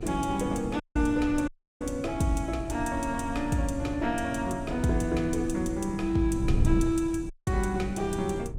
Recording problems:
electrical hum; 50 Hz, harmonics up to 1.4 kHz, SNR 25 dB
wind on the microphone; below 140 Hz, SNR 8 dB
audio cutting out; at 1 s, at 1.5 s and at 7.5 s

